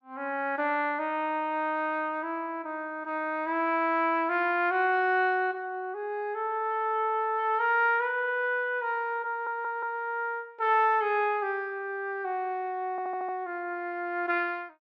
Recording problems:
audio stuttering; at 9.5 s and at 13 s

